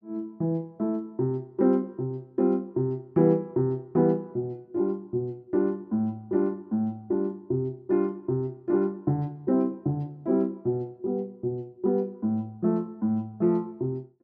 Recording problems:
none

